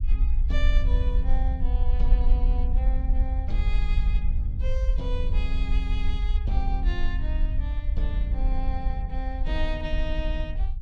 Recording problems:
rumble; below 54 Hz, SNR -9 dB

